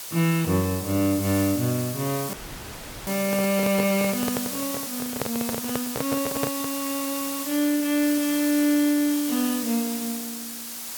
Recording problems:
background hiss; slope +1 dB per octave, SNR 6 dB
audio cutting out; at 2.5 s for 0.5 s
handling noise; from 3 to 6.5 s; peak +2 dB vs average level

